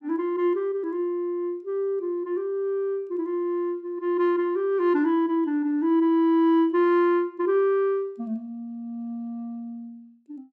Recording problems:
none

